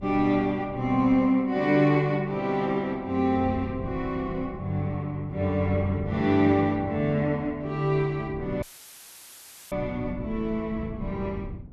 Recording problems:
wind on the microphone; below 190 Hz, SNR 16 dB
dropout; at 8.5 s for 1 s; filled with static

